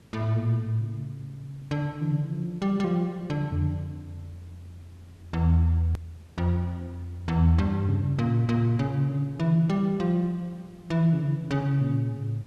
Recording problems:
hiss; SNR 28 dB
click at an edit; at 6 s

